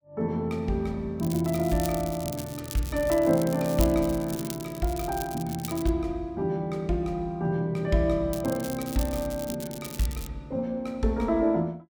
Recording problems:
crackling; from 1 to 6 s and from 8.5 to 10 s; loose cable, SNR 12 dB

